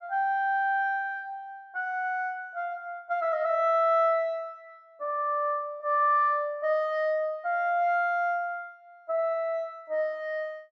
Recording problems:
none

